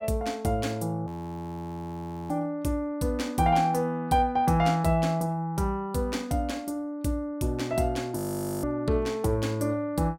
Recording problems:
audio freezing; at 1 s for 1 s and at 8 s

